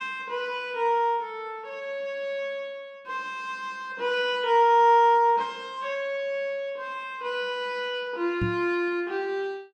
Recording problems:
microphone bump; at 8.5 s; peak +1 dB vs average level

